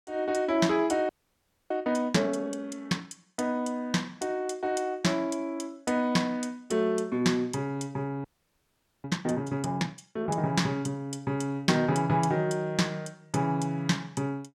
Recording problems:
frozen audio; at 1 s for 0.5 s and at 8 s for 1 s

